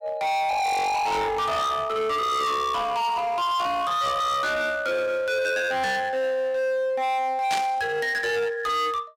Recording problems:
distortion; hard clipping, uneven, signal-to-distortion ratio 6 dB
burst of static; at 7.5 s; peak -1 dB vs average level

